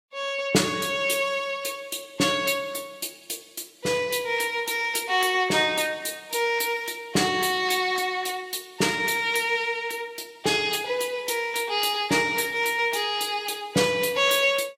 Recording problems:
lossy codec; Vorbis, log-spectral distance 5 dB, nothing above 14.7 kHz

